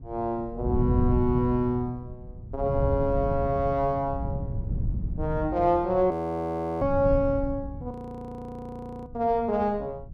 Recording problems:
wind noise; below 130 Hz, SNR 6 dB
audio freezing; at 6 s for 0.5 s and at 8 s for 1 s

